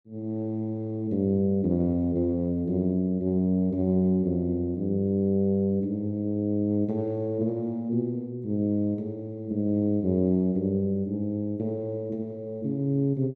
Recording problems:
none

